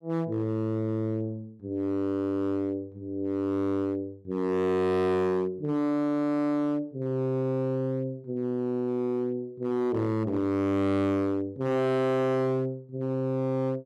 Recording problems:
distorted audio; hard clipping, signal-to-distortion ratio 7 dB

